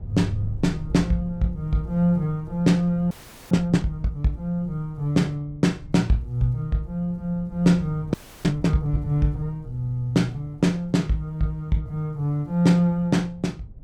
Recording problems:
wind on the microphone; below 130 Hz, SNR 17 dB
frozen audio; at 3 s and at 8 s

